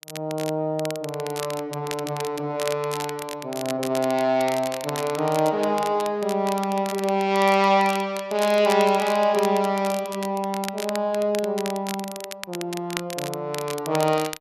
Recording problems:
crackle; vinyl, SNR 12 dB

